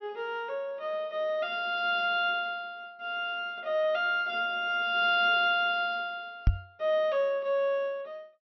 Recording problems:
low-pass filter; nothing above 6 kHz
knock on the microphone; at 6.5 s; peak +7 dB vs average level

